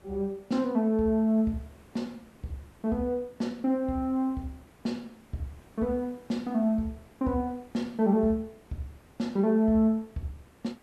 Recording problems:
hiss; slope -6 dB per octave, SNR 27 dB

